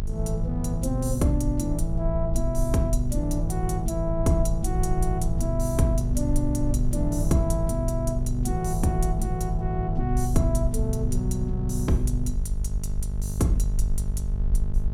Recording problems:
hum; 50 Hz, harmonics up to 650 Hz, SNR 7 dB
rumble; below 58 Hz, SNR 4 dB

